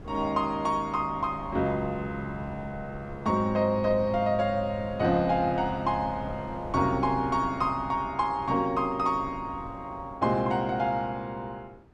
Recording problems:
wind on the microphone; below 320 Hz, SNR 17 dB

